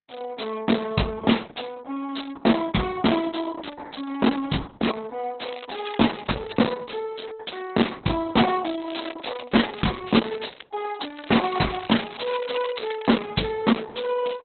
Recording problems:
codec artefacts; Opus, log-spectral distance 9 dB, nothing above 4.1 kHz
crackle; from 5.5 to 6.5 s, from 9 to 11 s and from 11 to 13 s; loose cable, SNR 16 dB

